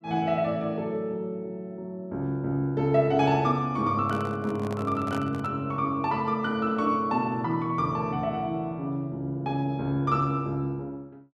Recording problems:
handling noise; from 4 to 5.5 s; peak -5 dB vs average level

